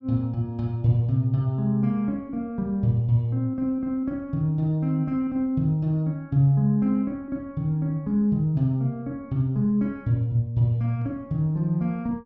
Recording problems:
treble cut off; nothing above 8 kHz

